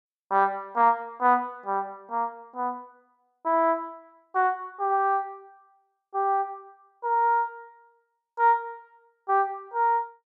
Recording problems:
none

